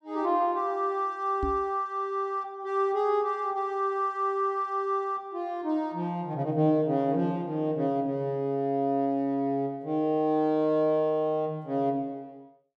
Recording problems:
knock on the microphone; at 1.5 s; peak -2 dB vs average level

